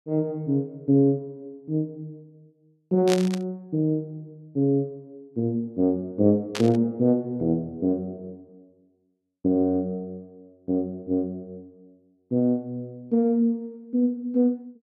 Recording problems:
burst of static; at 3 s and at 6.5 s; peak +1 dB vs average level

